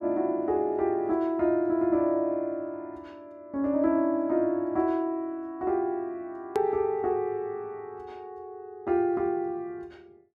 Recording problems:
click at an edit; at 6.5 s

